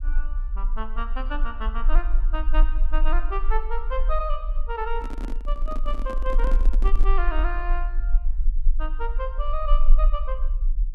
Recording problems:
rumble; below 36 Hz, strongest tone 20 Hz, SNR -6 dB
microphone handling noise; from 5 to 7 s; peak 0 dB vs average level

